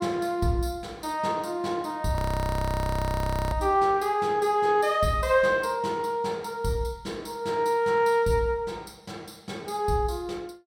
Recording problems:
frozen audio; at 2 s for 1.5 s

